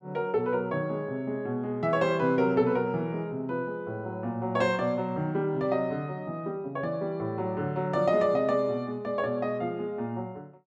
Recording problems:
none

